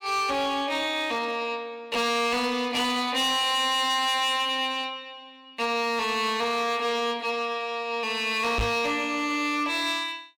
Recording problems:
distortion; hard clipping, uneven, signal-to-distortion ratio 10 dB
knock on the microphone; at 8.5 s; peak +1 dB vs average level

